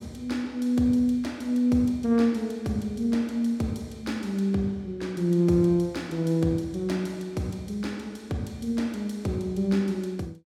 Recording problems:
none

